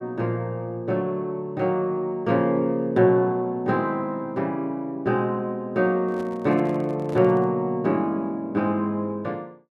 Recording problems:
handling noise; from 6 to 7.5 s; peak -12 dB vs average level

